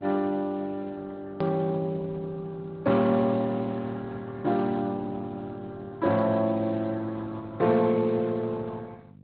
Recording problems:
treble missing; nothing above 4.1 kHz
codec artefacts; Speex, then Opus, log-spectral distance 3 dB
hum; 50 Hz, harmonics up to 500 Hz, SNR 22 dB
hard cut with a click; at 1.5 s

